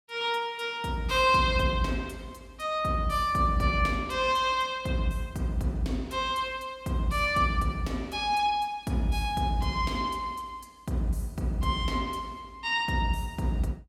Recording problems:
none

